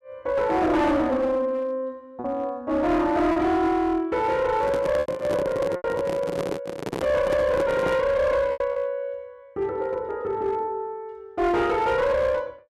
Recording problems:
distorted audio; hard clipping, uneven, signal-to-distortion ratio 10 dB
lost packets; 3% of the sound replaced, filled with repeated pitch periods
handling noise; from 4.5 to 8 s; peak 0 dB vs average level

